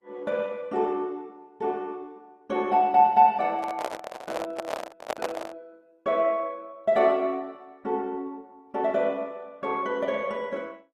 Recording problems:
codec artefacts; Opus, log-spectral distance 2 dB
handling noise; from 3.5 to 5.5 s; peak +1 dB vs average level

